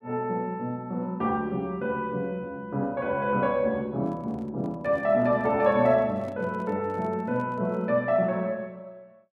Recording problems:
microphone handling noise; from 4 to 8 s; peak -11 dB vs average level

